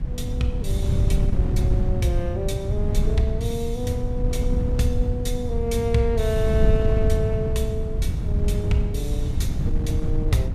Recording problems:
wind noise; below 110 Hz, SNR -3 dB

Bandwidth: 15 kHz